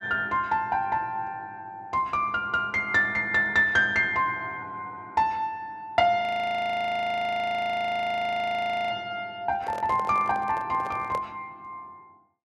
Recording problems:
frozen audio; at 6 s for 2.5 s
handling noise; from 9.5 to 11 s; peak -5 dB vs average level

